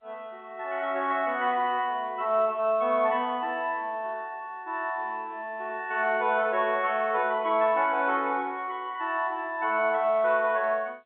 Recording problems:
phone line; 240 Hz to 3.7 kHz, G.711

